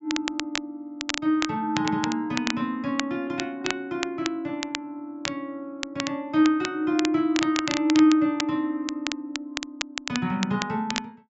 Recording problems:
low-pass filter; nothing above 8 kHz
crackle; vinyl, SNR 7 dB

